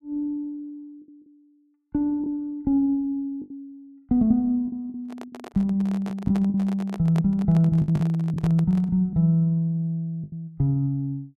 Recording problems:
packet loss; 5% of the sound replaced, filled with the last packet
microphone handling noise; from 5 to 9 s; peak -8 dB vs average level

